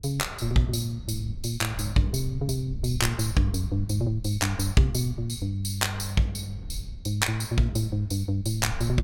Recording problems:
rumble; below 80 Hz, SNR 13 dB

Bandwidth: 17 kHz